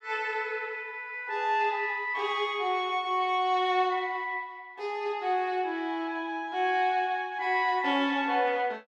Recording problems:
none

